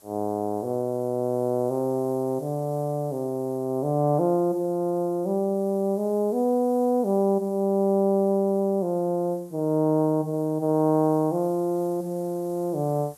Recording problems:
background hiss; SNR 27 dB

